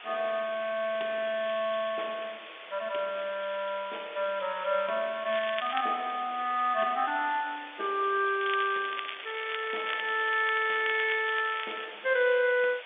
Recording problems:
phone line; 320 Hz to 3.6 kHz, G.711
hiss; SNR 15 dB
crackle; at 5.5 s and from 8.5 to 12 s; loose cable, SNR 9 dB

